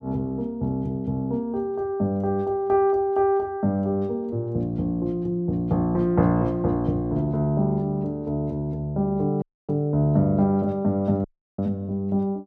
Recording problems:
dropout; at 9.5 s and at 11 s

